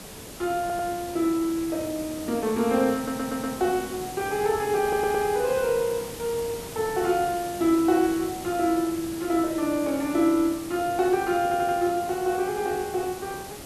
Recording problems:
hiss; SNR 12 dB
stutter; 4 times, first at 0.5 s

